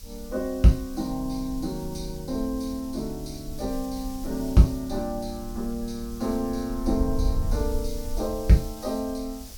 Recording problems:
hiss; slope +4 dB per octave, SNR 18 dB
wind noise; below 66 Hz, SNR 9 dB

